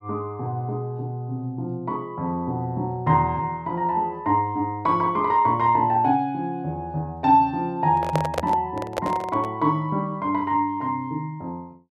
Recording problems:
handling noise; from 8 to 9.5 s; peak +3 dB vs average level

